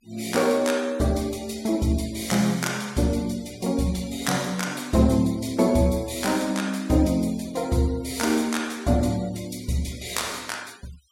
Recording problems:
noise reduction artefacts; signal-to-artefact ratio 22 dB

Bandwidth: 16 kHz